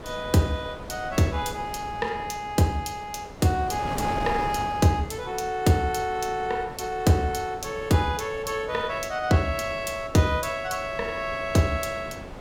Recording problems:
wind on the microphone; below 770 Hz, SNR 13 dB

